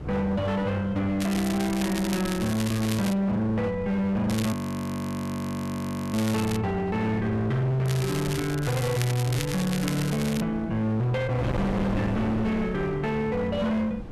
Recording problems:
distorted audio; hard clipping, signal-to-distortion ratio 8 dB
wind on the microphone; below 380 Hz, SNR 11 dB
crackle; from 1 to 3 s, from 4.5 to 6.5 s and from 8 to 10 s; loose cable, SNR 11 dB
audio freezing; at 4.5 s for 1.5 s

